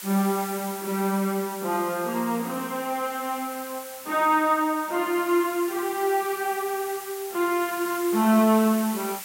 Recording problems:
background hiss; slope +2 dB per octave, SNR 12 dB

